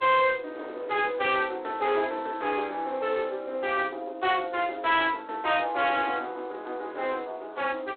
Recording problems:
telephone audio; 300 Hz to 3.6 kHz, G.726
distorted audio; soft clipping, signal-to-distortion ratio 12 dB
wind on the microphone; below 880 Hz, SNR 21 dB

